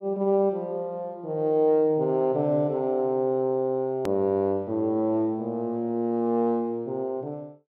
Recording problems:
edit click; at 4 s

